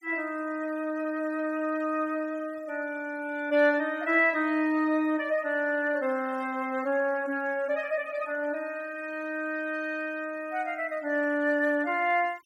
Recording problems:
noise reduction artefacts; signal-to-artefact ratio 26 dB

